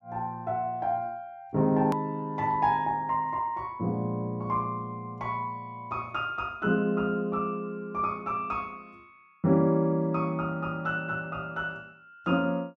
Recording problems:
edit click; at 2 s

